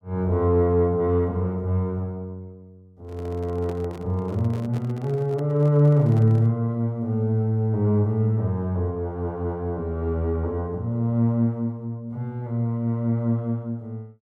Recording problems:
handling noise; from 3 to 6.5 s; peak -10 dB vs average level

